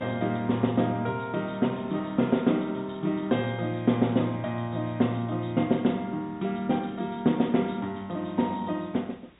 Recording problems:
treble cut off; nothing above 4 kHz
background hiss; SNR 30 dB

